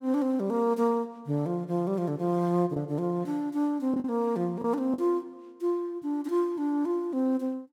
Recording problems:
lost packets; 1.8% of the sound replaced, filled with the last packet

